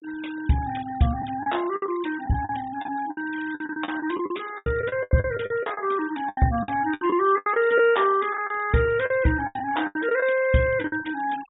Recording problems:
low-pass filter; nothing above 4 kHz
denoising artefacts; signal-to-artefact ratio 20 dB
packet loss; 14% of the sound replaced, filled with the last packet

